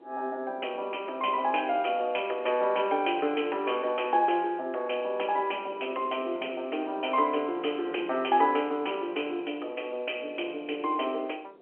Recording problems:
telephone audio; 300 Hz to 3.2 kHz, G.711
wind on the microphone; below 540 Hz, SNR 20 dB

